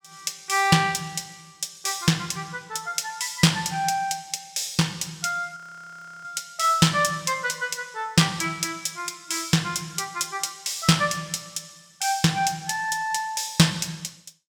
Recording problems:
audio freezing; at 5.5 s for 0.5 s

